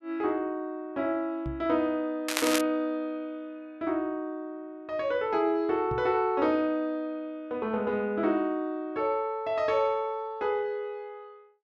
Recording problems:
microphone thump; at 1.5 s and at 6 s; peak -4 dB vs average level
crackling; at 2.5 s; loose cable, SNR 2 dB

